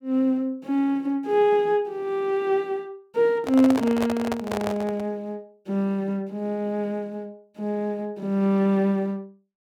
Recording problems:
microphone handling noise; from 3.5 to 5 s; peak -1 dB vs average level

